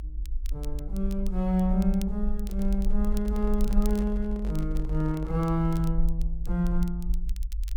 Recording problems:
low-frequency rumble; below 50 Hz, SNR 4 dB
crackling; vinyl, SNR 22 dB
microphone handling noise; from 2.5 to 6 s; peak -12 dB vs average level

